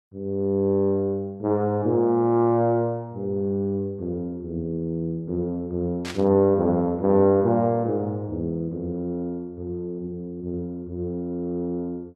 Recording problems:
static burst; at 6 s; peak -6 dB vs average level

